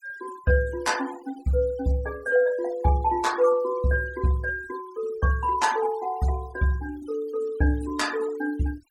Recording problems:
noise reduction artefacts; signal-to-artefact ratio 19 dB

